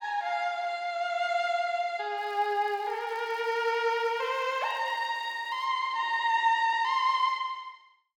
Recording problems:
crackling; from 2 to 5.5 s; loose cable, SNR 30 dB

